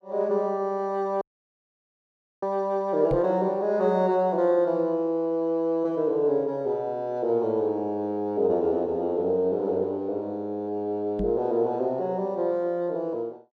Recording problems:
dropout; at 1 s for 1 s
microphone thump; at 3 s and at 11 s; peak -1 dB vs average level

